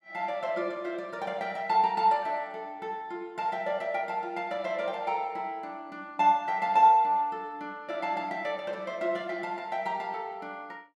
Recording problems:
none

